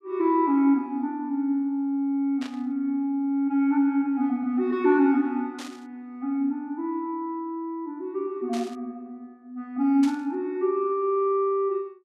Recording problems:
burst of static; 4 times, first at 2.5 s; peak -9 dB vs average level

